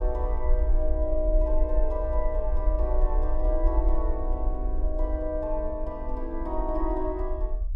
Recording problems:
rumble; below 48 Hz, SNR -2 dB

